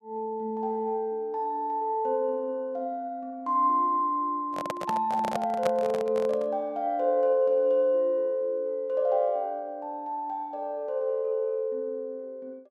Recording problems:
microphone handling noise; from 4.5 to 6.5 s; peak +2 dB vs average level

